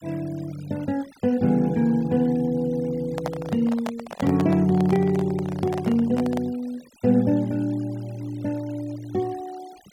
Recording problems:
denoising artefacts; signal-to-artefact ratio 24 dB
handling noise; from 3 to 6.5 s; peak -2 dB vs average level

